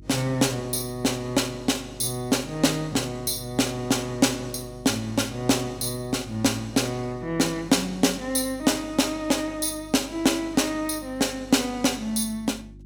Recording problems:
electrical hum; 50 Hz, harmonics up to 350 Hz, SNR 21 dB

